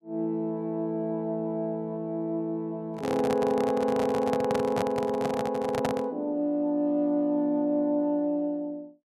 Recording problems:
microphone handling noise; from 3 to 6 s; peak +2 dB vs average level

